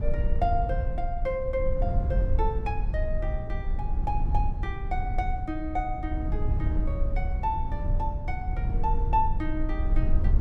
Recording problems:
rumble; below 70 Hz, SNR -2 dB

